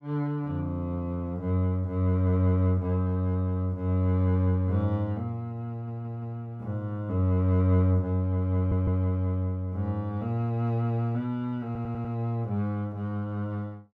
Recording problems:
stutter; at 5.5 s, at 8.5 s and at 12 s

